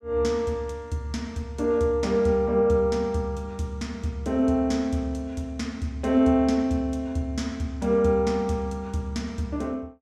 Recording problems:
none

